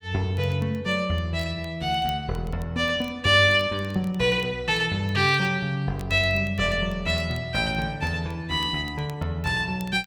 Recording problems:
crackle; vinyl, SNR 28 dB

